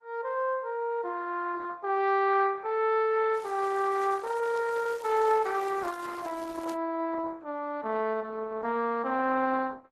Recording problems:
codec artefacts; Opus, then AAC, log-spectral distance 3 dB
crackling; from 3.5 to 6.5 s; loose cable, SNR 22 dB

